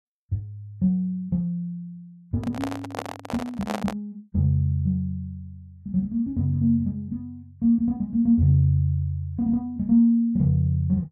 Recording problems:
handling noise; from 2.5 to 4 s; peak -2 dB vs average level

